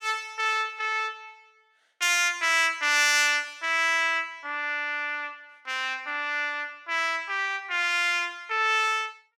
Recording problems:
none

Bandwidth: 17 kHz